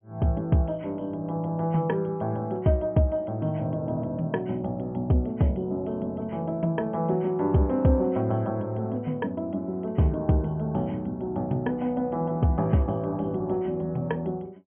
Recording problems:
treble cut off; nothing above 3.3 kHz

